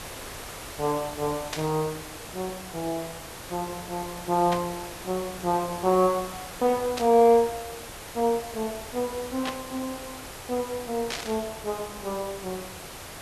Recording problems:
background hiss; slope -3 dB per octave, SNR 11 dB
burst of static; 5 times, first at 1.5 s; peak 0 dB vs average level

